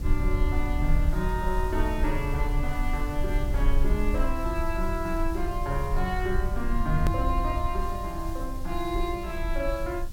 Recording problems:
background hiss; slope +1 dB per octave, SNR 18 dB
rumble; below 56 Hz, strongest tone 20 Hz, SNR 0 dB
hard cut with a click; at 7 s

